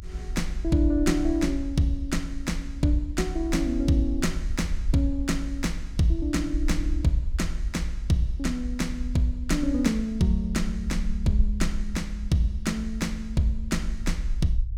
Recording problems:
rumble; below 56 Hz, SNR 6 dB

